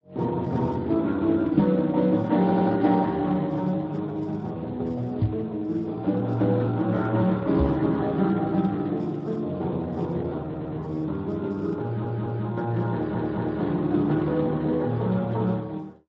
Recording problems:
codec artefacts; MP3, then Speex, log-spectral distance 2 dB
knock on the microphone; at 1.5 s, at 5 s and at 7.5 s; peak +6 dB vs average level
stutter; 4 times, first at 2.5 s

